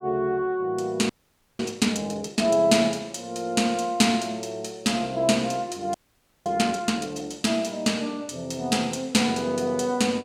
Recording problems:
audio freezing; at 1 s and at 6 s for 0.5 s

